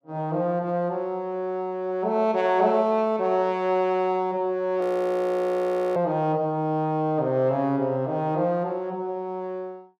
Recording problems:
audio freezing; at 5 s for 1 s

